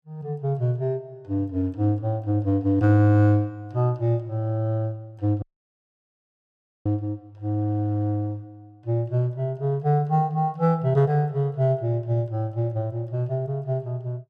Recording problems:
audio cutting out; at 5.5 s for 1.5 s

